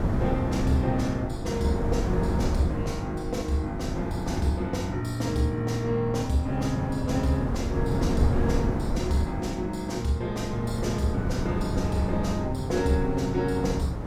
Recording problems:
wind noise; below 250 Hz, SNR 4 dB

